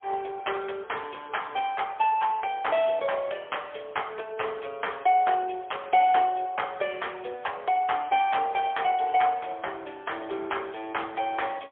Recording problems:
telephone audio; 340 Hz to 3.4 kHz, AMR-NB, then MP3

